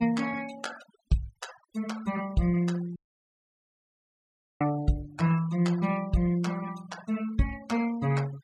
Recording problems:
denoising artefacts; signal-to-artefact ratio 18 dB
dropout; at 3 s for 1.5 s

